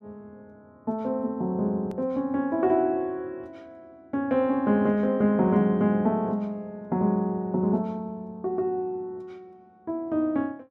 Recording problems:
click at an edit; at 2 s

